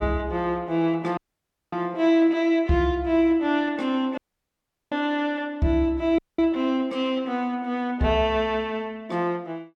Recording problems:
audio cutting out; at 1 s for 0.5 s, at 4 s for 0.5 s and at 6 s

